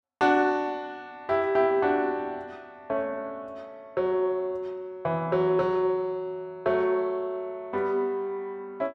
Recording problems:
none

